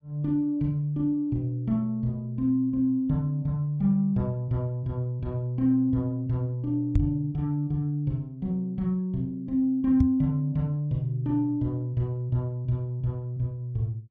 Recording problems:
knock on the microphone; at 7 s and at 10 s; peak +7 dB vs average level

